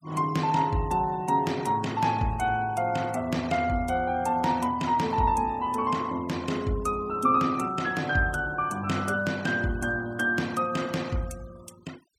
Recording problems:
denoising artefacts; signal-to-artefact ratio 22 dB

